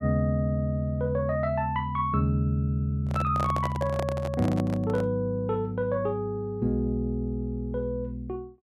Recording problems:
handling noise; from 3 to 5 s; peak -1 dB vs average level

